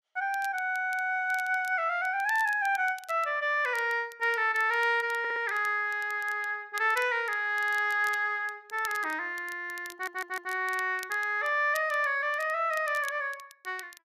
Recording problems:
crackle; vinyl, SNR 21 dB
stutter; at 5 s and at 10 s

